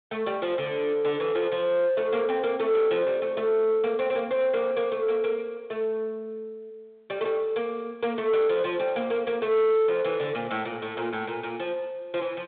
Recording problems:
phone line; 260 Hz to 3.8 kHz, G.726
distortion; soft clipping, signal-to-distortion ratio 11 dB

